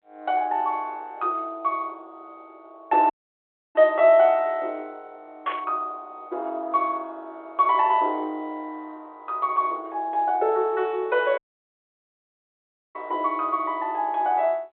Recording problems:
phone line; 340 Hz to 3.6 kHz, G.726
dropout; at 3 s for 0.5 s and at 11 s for 1.5 s
static burst; at 5.5 s; peak -7 dB vs average level

